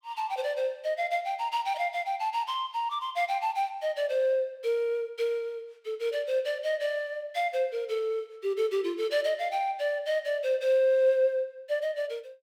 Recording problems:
none

